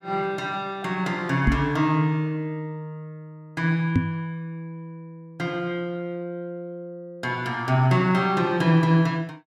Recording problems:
knock on the microphone; at 1.5 s and at 4 s; peak +7 dB vs average level

